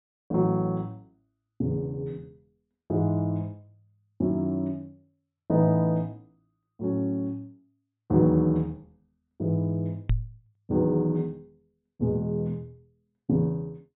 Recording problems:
treble cut off; nothing above 3.8 kHz
microphone thump; at 10 s; peak +5 dB vs average level

